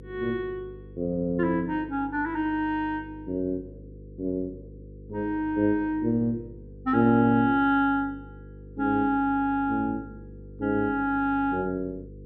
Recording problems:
hum; 50 Hz, harmonics up to 500 Hz, SNR 19 dB

